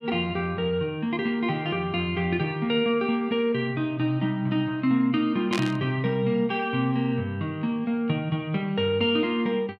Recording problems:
static burst; at 5.5 s; peak -1 dB vs average level

